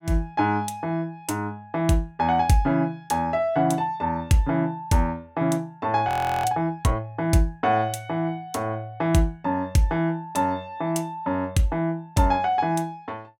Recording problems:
audio freezing; at 6 s

